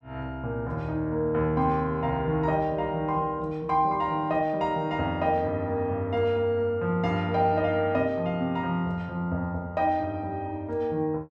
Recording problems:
none

